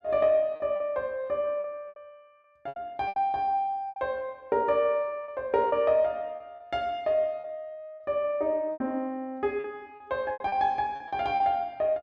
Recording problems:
packet loss; 9% of the sound replaced, filled with repeated pitch periods

